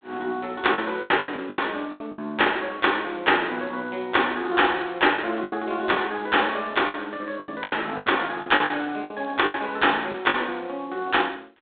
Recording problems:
phone line; 170 Hz to 3.6 kHz, G.726
packet loss; 11% of the sound replaced, filled with the last packet

